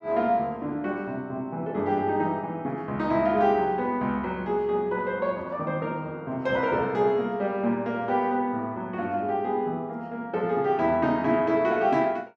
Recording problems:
none

